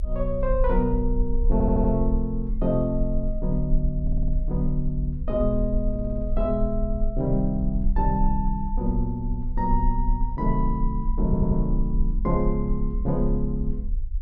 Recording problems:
rumble; below 44 Hz, strongest tone 28 Hz, SNR 2 dB
audio stuttering; 4 times, first at 1.5 s

